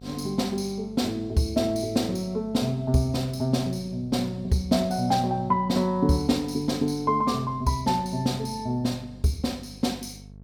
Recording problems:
electrical hum; 50 Hz, harmonics up to 650 Hz, SNR 20 dB

